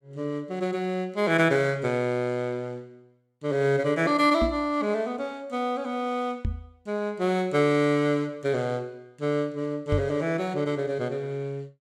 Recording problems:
microphone bump; at 4.5 s, at 6.5 s and at 10 s; peak +3 dB vs average level

